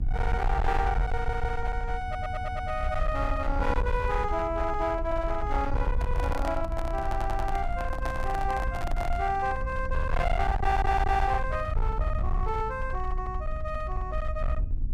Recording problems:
distortion; hard clipping, uneven, signal-to-distortion ratio 8 dB
hum; 60 Hz, harmonics up to 300 Hz, SNR 14 dB
rumble; below 70 Hz, SNR 2 dB
stutter; 4 times, first at 1 s
handling noise; from 6 to 9 s; peak -1 dB vs average level

